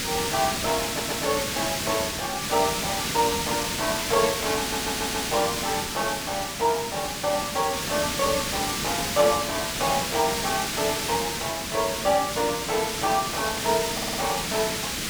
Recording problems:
hiss; SNR 0 dB
stutter; at 1 s, at 4.5 s and at 14 s

